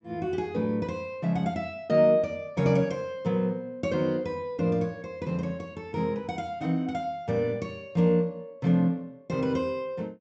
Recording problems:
treble missing; nothing above 8 kHz

